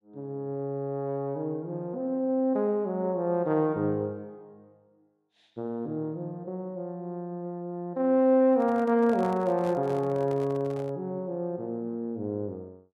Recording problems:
microphone handling noise; from 8.5 to 11 s; peak -9 dB vs average level

